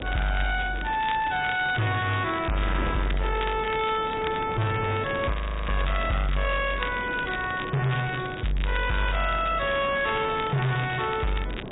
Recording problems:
low-pass filter; nothing above 3.7 kHz
lossy codec; MP3, log-spectral distance 6 dB
distorted audio; soft clipping, signal-to-distortion ratio 7 dB
wind on the microphone; below 650 Hz, SNR 11 dB
crackle; vinyl, SNR 14 dB
audio freezing; at 5.5 s

